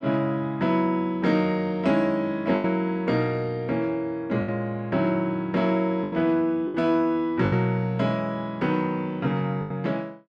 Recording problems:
lost packets; 4% of the sound replaced, filled with the last packet

